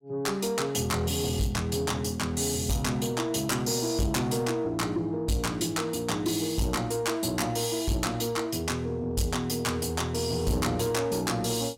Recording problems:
distorted audio; soft clipping, signal-to-distortion ratio 10 dB

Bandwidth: 16 kHz